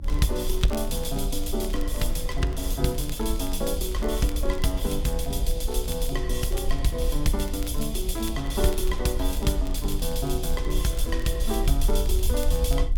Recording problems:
electrical hum; 60 Hz, harmonics up to 300 Hz, SNR 15 dB
rumble; below 50 Hz, SNR 3 dB
crackle; vinyl, SNR 20 dB

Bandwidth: 18 kHz